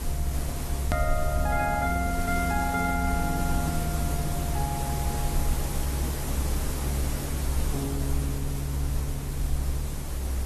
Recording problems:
lossy compression; AAC, log-spectral distance 7 dB, nothing above 13.1 kHz
hum; 50 Hz, harmonics up to 550 Hz, SNR 14 dB
hiss; SNR 3 dB
low-frequency rumble; below 66 Hz, strongest tone 66 Hz, SNR 0 dB
edit click; at 1 s

